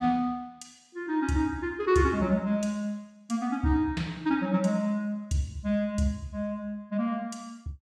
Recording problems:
none

